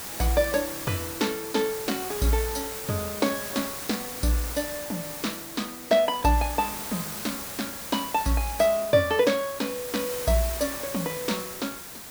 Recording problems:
background hiss; slope -2 dB per octave, SNR 7 dB
crackling; vinyl, SNR 29 dB

